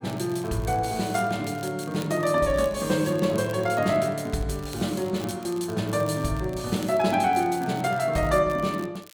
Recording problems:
crackling; vinyl, SNR 22 dB

